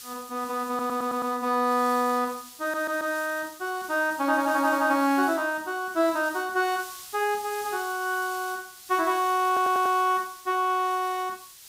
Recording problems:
hiss; slope +4 dB per octave, SNR 16 dB
audio stuttering; at 0.5 s, at 2.5 s and at 9.5 s

